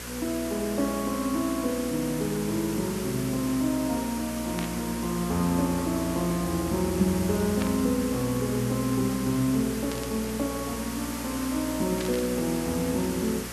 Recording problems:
mains hum; 60 Hz, harmonics up to 540 Hz, SNR 13 dB
hiss; SNR 9 dB
static burst; 4 times, first at 4.5 s; peak -4 dB vs average level

